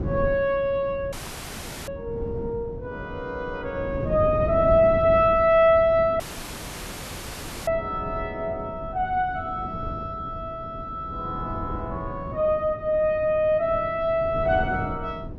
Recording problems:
wind on the microphone; below 250 Hz, SNR 11 dB
audio cutting out; at 1 s for 1 s and at 6 s for 1.5 s

